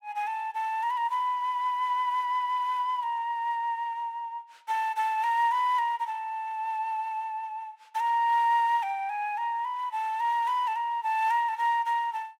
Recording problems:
none

